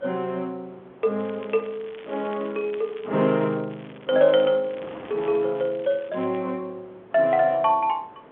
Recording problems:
phone line; 240 Hz to 3.8 kHz, G.711
wind on the microphone; below 1.1 kHz, SNR 24 dB
crackle; from 1 to 6.5 s; loose cable, SNR 25 dB

